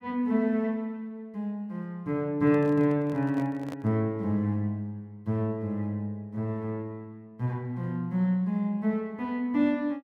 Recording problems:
handling noise; from 2.5 to 4 s; peak -8 dB vs average level

